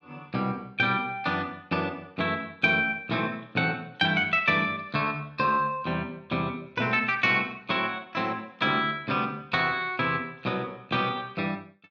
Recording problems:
none

